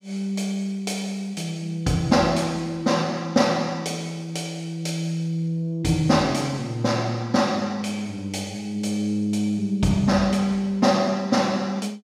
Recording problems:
none

